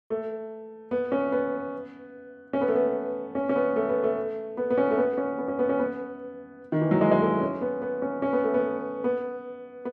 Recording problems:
none

